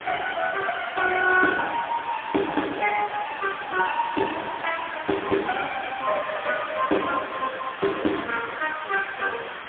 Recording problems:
telephone audio; 220 Hz to 3.5 kHz, AMR-NB, then MP3
hiss; SNR 10 dB

